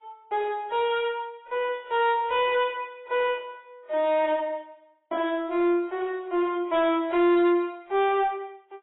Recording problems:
lossy codec; AAC, log-spectral distance 2 dB, nothing above 3.3 kHz
distortion; soft clipping, signal-to-distortion ratio 10 dB

